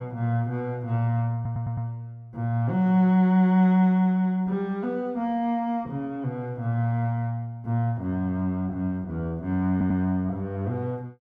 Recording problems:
stutter; at 1.5 s and at 9.5 s

